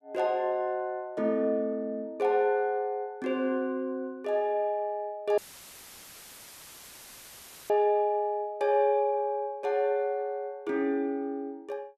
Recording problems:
dropout; at 5.5 s for 2.5 s; filled with static

